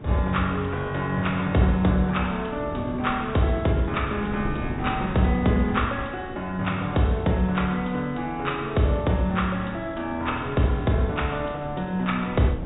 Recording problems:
low-pass filter; nothing above 4 kHz
background hiss; SNR 29 dB
wind noise; below 330 Hz, SNR 14 dB

